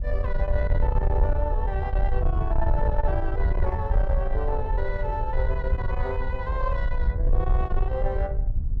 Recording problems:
distortion; soft clipping, signal-to-distortion ratio 12 dB
wind noise; below 66 Hz, SNR -3 dB

